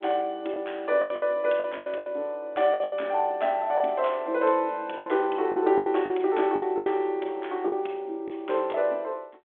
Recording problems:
phone line; 260 Hz to 3.5 kHz, G.726
packet loss; 11% of the sound replaced, filled with the last packet

